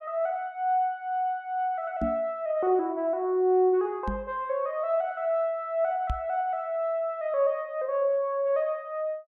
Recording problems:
microphone thump; at 2 s, at 4 s and at 6 s; peak 0 dB vs average level

